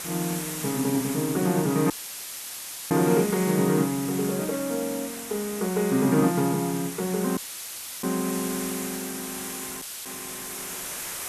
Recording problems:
hiss; slope -1 dB per octave, SNR 8 dB
dropout; at 2 s for 1 s, at 7.5 s for 0.5 s and at 10 s; filled with static

